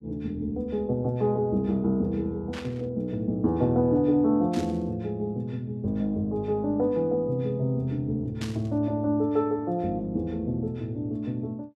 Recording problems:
static burst; at 2.5 s, at 4.5 s and at 8.5 s; peak -7 dB vs average level

